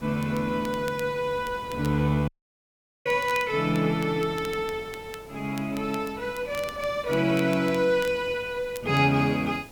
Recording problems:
background hiss; slope -2 dB per octave, SNR 27 dB
wind noise; below 590 Hz, SNR 21 dB
crackle; vinyl, SNR 20 dB
audio cutting out; at 2.5 s for 1 s

